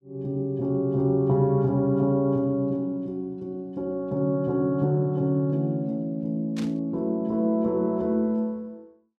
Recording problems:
static burst; at 6.5 s; peak -10 dB vs average level

